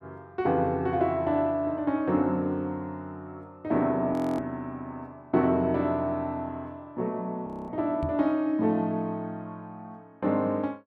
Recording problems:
audio freezing; at 4 s and at 7.5 s
microphone bump; at 8 s; peak -1 dB vs average level

